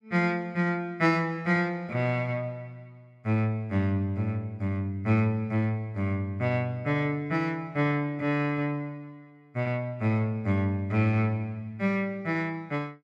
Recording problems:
none

